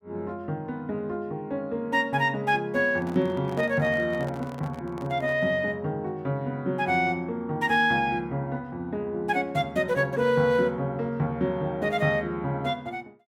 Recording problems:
microphone handling noise; from 3 to 5.5 s; peak -9 dB vs average level

